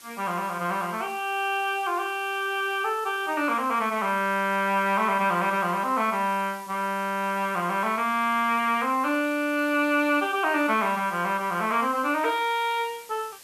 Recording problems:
hiss; slope +1 dB per octave, SNR 21 dB

